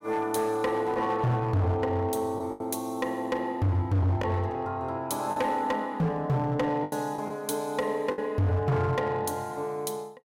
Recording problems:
distortion; hard clipping, signal-to-distortion ratio 7 dB
packet loss; 4% of the sound replaced, filled with the last packet

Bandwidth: 16.5 kHz